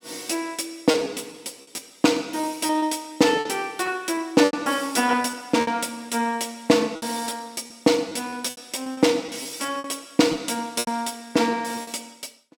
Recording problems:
lost packets; 9% of the sound replaced, filled with repeated pitch periods

